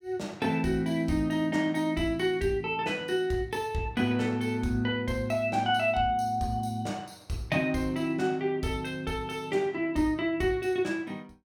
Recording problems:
none

